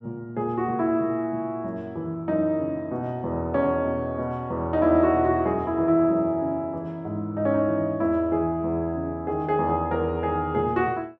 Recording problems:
none

